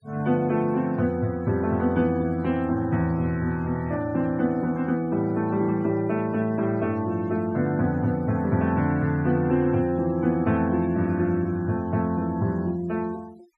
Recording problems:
denoising artefacts; signal-to-artefact ratio 26 dB

